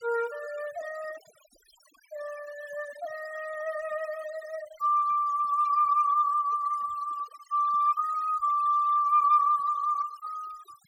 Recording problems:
denoising artefacts; signal-to-artefact ratio 22 dB

